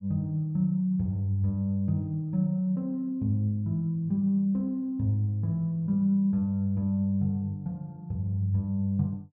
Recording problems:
none

